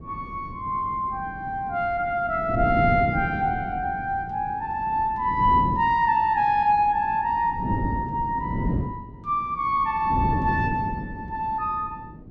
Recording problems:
wind on the microphone; below 270 Hz, SNR 8 dB

